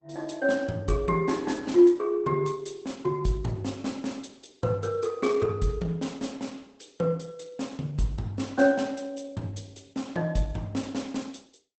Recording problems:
lossy compression; Opus, log-spectral distance 4 dB, nothing above 8.2 kHz

